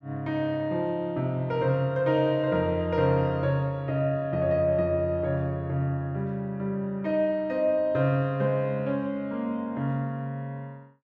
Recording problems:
none

